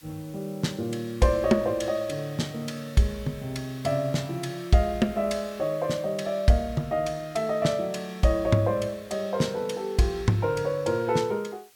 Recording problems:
background hiss; slope +2 dB per octave, SNR 26 dB

